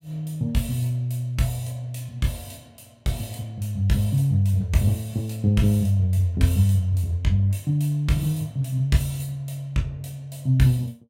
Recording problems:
none

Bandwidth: 16 kHz